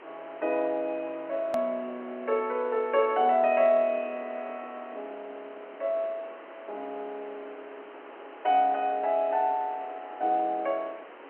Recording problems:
phone line; 260 Hz to 3.4 kHz, G.711
background hiss; SNR 18 dB
hard cut with a click; at 1.5 s

